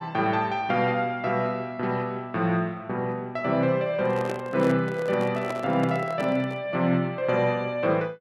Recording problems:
microphone handling noise; from 4 to 6.5 s; peak -3 dB vs average level

